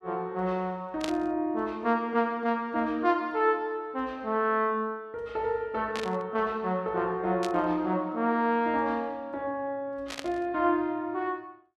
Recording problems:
burst of static; 4 times, first at 1 s; peak -1 dB vs average level

